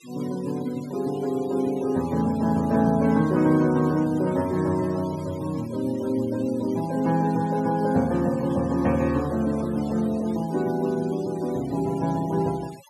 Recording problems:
denoising artefacts; signal-to-artefact ratio 22 dB

